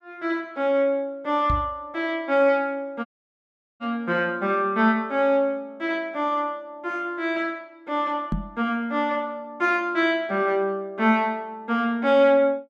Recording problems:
knock on the microphone; at 1.5 s and at 8.5 s; peak +1 dB vs average level
dropout; at 3 s for 1 s

